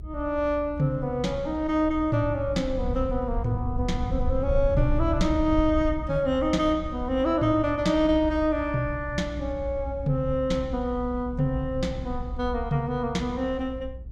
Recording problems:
rumble; below 76 Hz, SNR 8 dB

